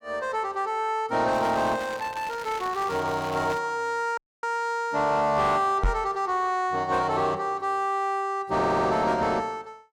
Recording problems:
distorted audio; soft clipping, signal-to-distortion ratio 11 dB
crackle; from 1.5 to 3.5 s; loose cable, SNR 16 dB
audio cutting out; at 4 s
microphone thump; at 6 s; peak +4 dB vs average level
audio stuttering; at 8.5 s

